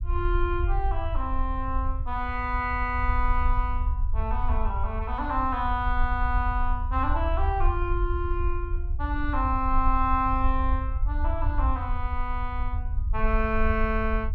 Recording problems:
rumble; below 64 Hz, SNR 1 dB

